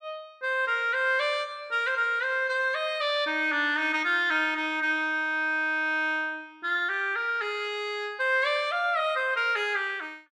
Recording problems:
none

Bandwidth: 14 kHz